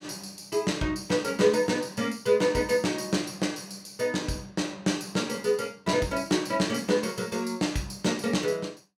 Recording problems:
none

